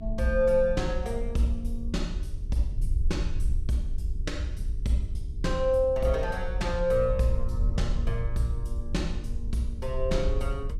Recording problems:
hum; 60 Hz, harmonics up to 420 Hz, SNR 22 dB
wind noise; below 64 Hz, SNR 4 dB

